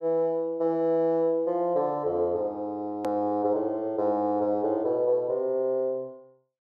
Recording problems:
hard cut with a click; at 3 s

